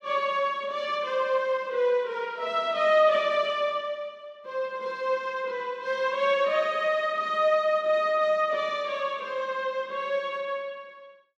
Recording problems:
none

